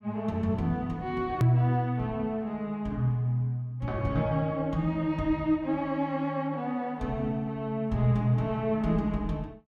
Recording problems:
edit click; at 1.5 s

